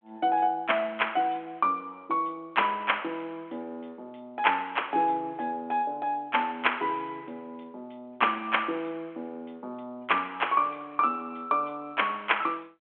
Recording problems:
phone line; 240 Hz to 3.4 kHz, G.726

